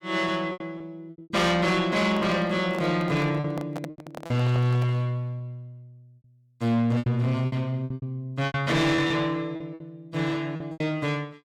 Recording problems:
distorted audio; soft clipping, signal-to-distortion ratio 10 dB
lost packets; 11% of the sound replaced, filled with repeated pitch periods
microphone handling noise; from 2 to 5 s; peak -4 dB vs average level

